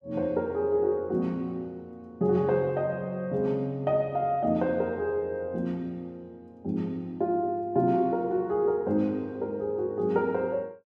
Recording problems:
none

